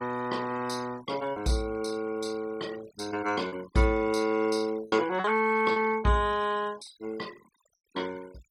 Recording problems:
noise reduction artefacts; signal-to-artefact ratio 20 dB
lost packets; 3% of the sound replaced, filled with repeated pitch periods

